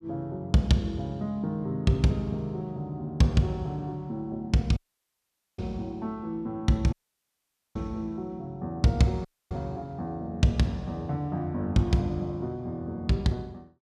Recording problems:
dropout; at 5 s for 1 s, at 7 s for 1 s and at 9.5 s

